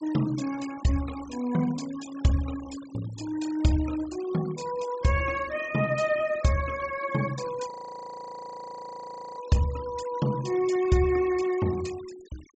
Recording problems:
treble missing; nothing above 8 kHz
denoising artefacts; signal-to-artefact ratio 18 dB
frozen audio; at 7.5 s for 1.5 s

